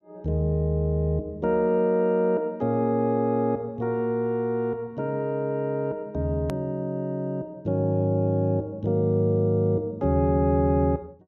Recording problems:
edit click; at 6.5 s

